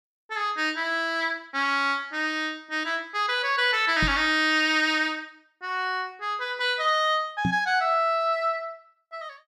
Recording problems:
knock on the microphone; at 4 s and at 7.5 s; peak +2 dB vs average level

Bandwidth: 14.5 kHz